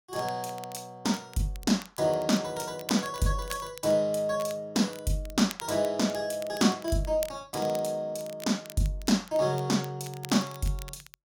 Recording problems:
crackle; vinyl, SNR 17 dB

